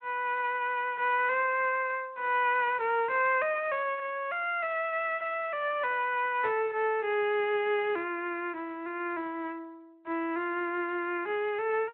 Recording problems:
telephone audio; 260 Hz to 3.2 kHz, Speex

